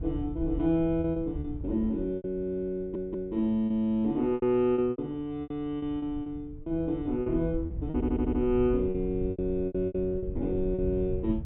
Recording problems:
low-pass filter; nothing above 3.6 kHz
wind noise; below 100 Hz, SNR 10 dB
lost packets; 11% of the sound replaced, filled with repeated pitch periods
stutter; at 3 s and at 8 s

